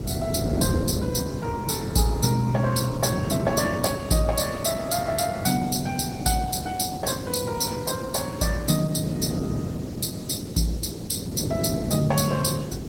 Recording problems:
lossy compression; Opus, log-spectral distance 5 dB, nothing above 16.5 kHz
background hiss; SNR 23 dB
wind on the microphone; below 320 Hz, SNR 4 dB

